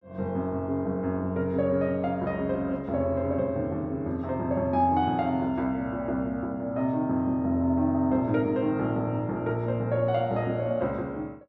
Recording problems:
none

